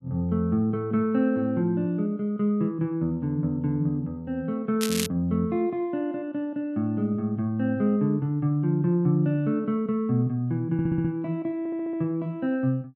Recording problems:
crackling; at 5 s; loose cable, SNR 6 dB
stutter; at 11 s and at 12 s

